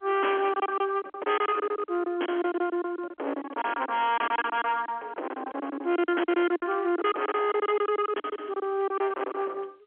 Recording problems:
telephone audio; 280 Hz to 3.3 kHz, G.711
distorted audio; hard clipping, uneven, signal-to-distortion ratio 8 dB
lost packets; 17% of the sound replaced, filled with silence

